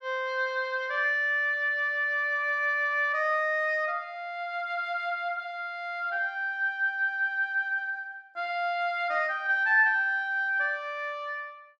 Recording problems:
none

